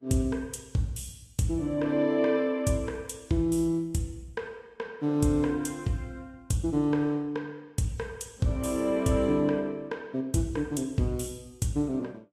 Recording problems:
codec artefacts; Vorbis, then Vorbis, log-spectral distance 2 dB, nothing above 13.5 kHz

